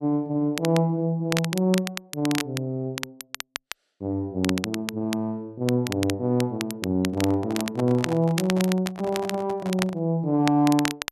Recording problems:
crackling; vinyl, SNR 9 dB
microphone handling noise; from 7 to 10 s; peak -5 dB vs average level

